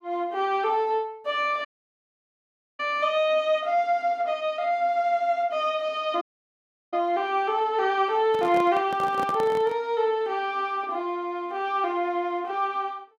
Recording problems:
dropout; at 1.5 s for 1 s and at 6 s for 0.5 s
handling noise; from 8.5 to 10 s; peak -6 dB vs average level

